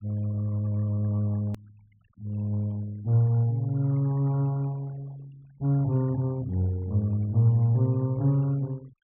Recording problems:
treble cut off; nothing above 3.2 kHz
denoising artefacts; signal-to-artefact ratio 27 dB
edit click; at 1.5 s

